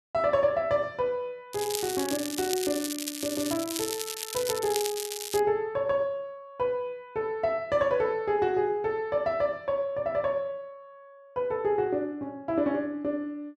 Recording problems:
crackling; from 1.5 to 5.5 s; loose cable, SNR 5 dB

